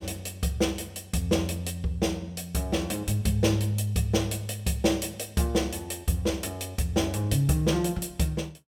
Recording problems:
none

